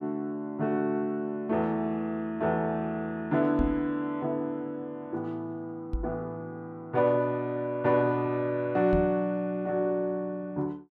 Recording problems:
microphone thump; at 3.5 s, at 6 s and at 9 s; peak +3 dB vs average level

